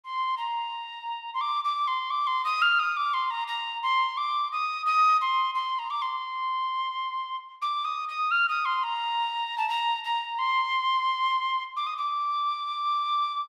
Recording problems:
none

